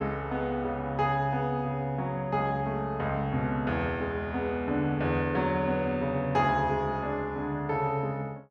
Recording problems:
none

